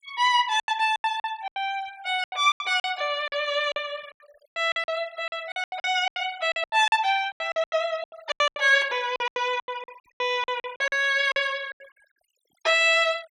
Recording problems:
denoising artefacts; signal-to-artefact ratio 24 dB
packet loss; 18% of the sound replaced, filled with silence

